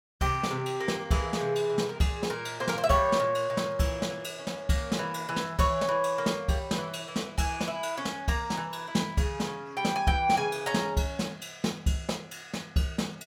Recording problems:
none

